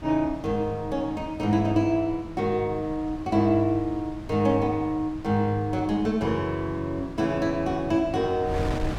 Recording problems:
wind on the microphone; below 270 Hz, SNR 15 dB

